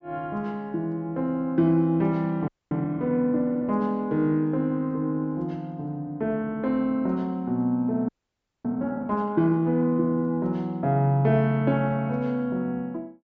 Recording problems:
treble missing; nothing above 8 kHz
audio freezing; at 2.5 s and at 8 s for 0.5 s

